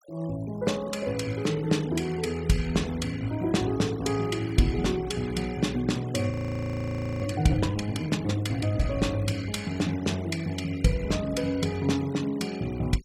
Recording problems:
denoising artefacts; signal-to-artefact ratio 19 dB
audio freezing; at 6.5 s for 1 s

